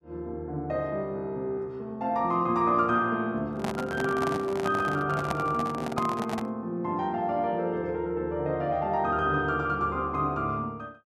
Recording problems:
microphone handling noise; from 3.5 to 6.5 s; peak +1 dB vs average level

